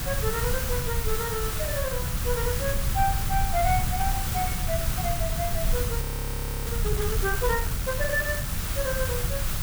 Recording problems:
hiss; SNR 1 dB
low-frequency rumble; below 110 Hz, SNR 1 dB
microphone handling noise; from 5 to 8 s; peak -12 dB vs average level
frozen audio; at 6 s for 0.5 s

